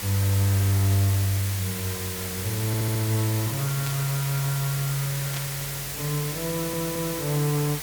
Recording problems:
hum; 50 Hz, harmonics up to 550 Hz, SNR 23 dB
background hiss; slope 0 dB per octave, SNR 4 dB
audio stuttering; at 2.5 s and at 6.5 s
burst of static; at 4 s and at 5.5 s; peak -5 dB vs average level

